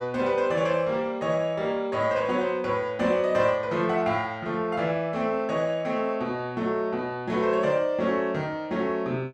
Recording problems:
none

